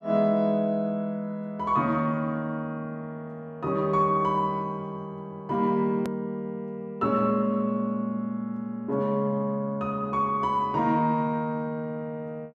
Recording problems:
edit click; at 6 s

